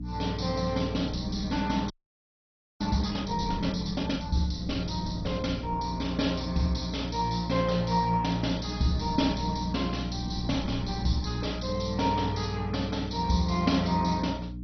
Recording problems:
codec artefacts; MP2, log-spectral distance 6 dB, nothing above 6 kHz
hum; 60 Hz, harmonics up to 300 Hz, SNR 8 dB
wind noise; below 220 Hz, SNR 14 dB
audio freezing; at 2 s for 1 s

